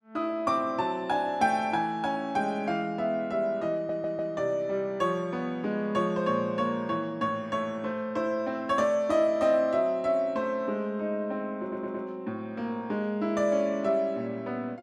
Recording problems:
stutter; at 4 s and at 12 s

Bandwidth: 14 kHz